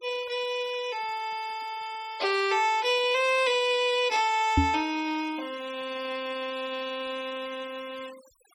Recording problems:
noise reduction artefacts; signal-to-artefact ratio 20 dB
microphone thump; at 4.5 s; peak +7 dB vs average level

